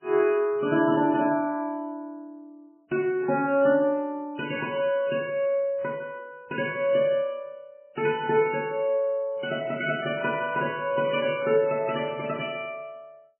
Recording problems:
codec artefacts; MP3, log-spectral distance 3 dB, nothing above 2.5 kHz

